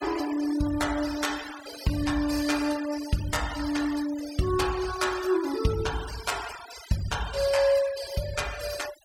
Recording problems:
noise reduction artefacts; signal-to-artefact ratio 12 dB

